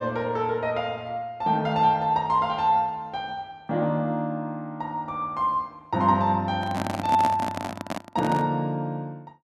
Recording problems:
handling noise; from 6.5 to 8.5 s; peak +1 dB vs average level

